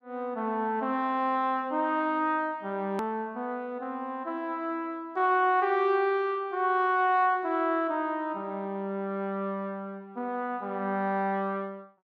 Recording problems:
click at an edit; at 3 s

